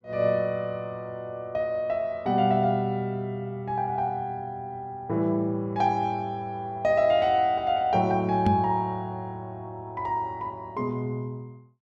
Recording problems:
microphone bump; at 8.5 s; peak +6 dB vs average level

